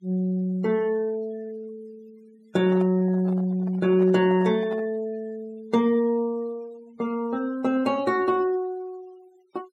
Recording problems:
noise reduction artefacts; signal-to-artefact ratio 26 dB
handling noise; from 2.5 to 5 s; peak -11 dB vs average level

